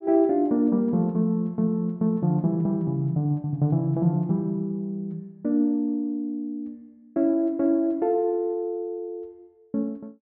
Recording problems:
none

